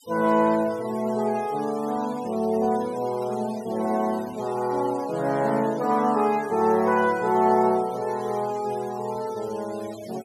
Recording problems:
denoising artefacts; signal-to-artefact ratio 20 dB

